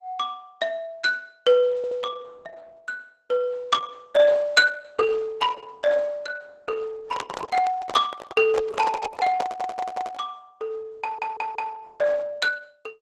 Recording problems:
lossy codec; Opus, log-spectral distance 3 dB, nothing above 12 kHz
audio stuttering; at 2 s, at 9.5 s and at 11 s
microphone handling noise; from 7 to 10 s; peak -4 dB vs average level

